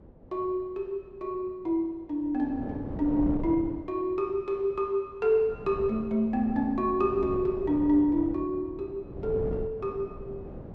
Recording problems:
wind noise; below 380 Hz, SNR 11 dB

